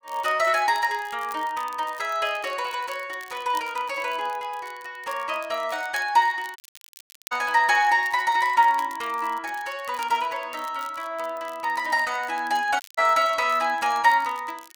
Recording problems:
crackling; vinyl, SNR 23 dB
dropout; at 6.5 s for 1 s and at 13 s

